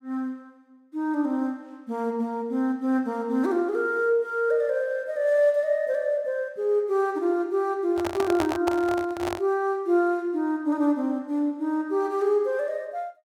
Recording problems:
handling noise; from 8 to 9.5 s; peak +2 dB vs average level

